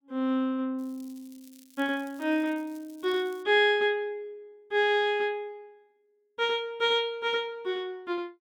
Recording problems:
crackling; from 1 to 3.5 s; loose cable, SNR 28 dB

